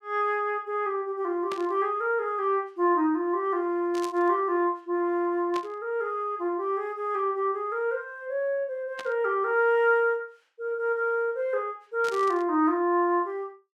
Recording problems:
burst of static; 5 times, first at 1.5 s; peak -7 dB vs average level

